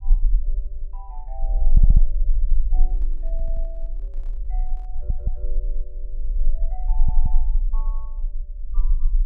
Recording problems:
rumble; below 34 Hz, strongest tone 18 Hz, SNR -21 dB
audio stuttering; 4 times, first at 1.5 s
microphone handling noise; from 3 to 5.5 s; peak -6 dB vs average level

